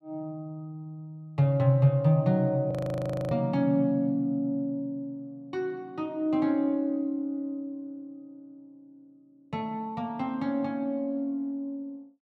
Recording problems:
frozen audio; at 2.5 s for 0.5 s

